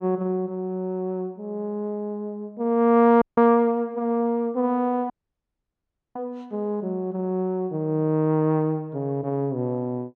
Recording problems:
audio cutting out; at 3 s and at 5 s for 1 s

